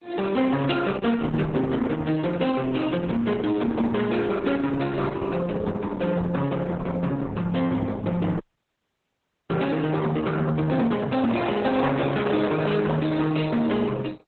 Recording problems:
lossy codec; Opus, then Opus, log-spectral distance 4 dB, nothing above 3.9 kHz
distorted audio; soft clipping, signal-to-distortion ratio 11 dB
audio freezing; at 8.5 s for 1 s
microphone handling noise; from 11 to 13 s; peak 0 dB vs average level

